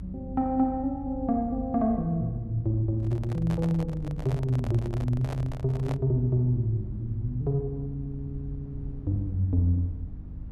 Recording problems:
hum; 50 Hz, harmonics up to 300 Hz, SNR 14 dB
rumble; below 82 Hz, SNR 15 dB
microphone handling noise; from 3 to 6 s; peak -5 dB vs average level

